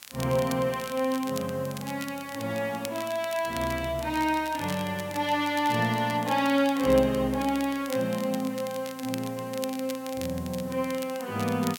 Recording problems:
background hiss; slope 0 dB per octave, SNR 21 dB
crackle; vinyl, SNR 15 dB

